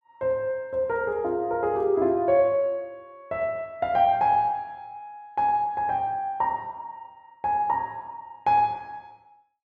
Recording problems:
none

